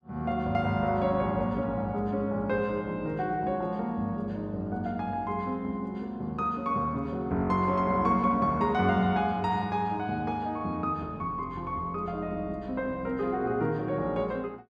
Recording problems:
none

